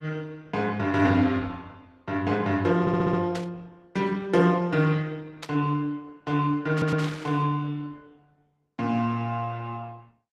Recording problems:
lossy codec; Opus, log-spectral distance 3 dB, nothing above 13.7 kHz
audio stuttering; at 3 s and at 6.5 s
burst of static; at 3.5 s, at 5.5 s and at 7 s; peak -6 dB vs average level

